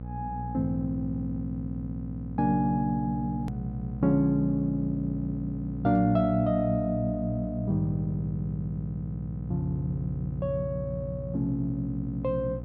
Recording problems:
electrical hum; 60 Hz, harmonics up to 540 Hz, SNR 8 dB
hard cut with a click; at 3.5 s

